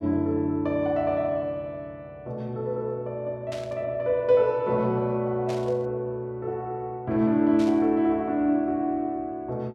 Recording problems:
burst of static; at 3.5 s, at 5.5 s and at 7.5 s; peak -11 dB vs average level

